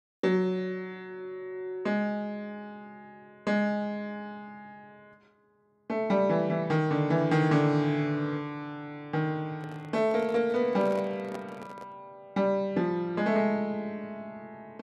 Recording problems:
handling noise; from 9.5 to 12 s; peak -7 dB vs average level

